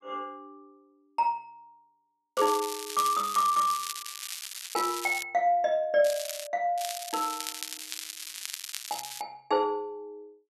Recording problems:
crackle; from 2.5 to 5 s, at 6 s and from 7 to 9 s; loose cable, SNR 8 dB

